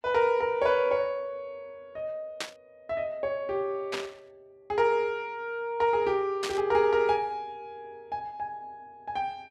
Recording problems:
static burst; at 2.5 s, at 4 s and at 6.5 s; peak 0 dB vs average level

